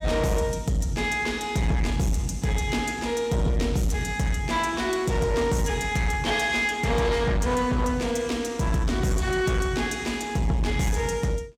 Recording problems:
distortion; soft clipping, signal-to-distortion ratio 10 dB

